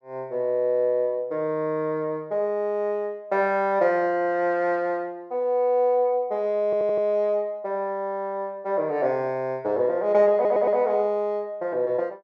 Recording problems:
stutter; at 6.5 s and at 10 s

